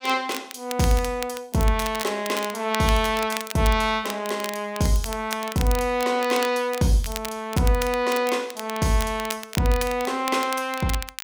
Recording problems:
crackling; vinyl, SNR 11 dB

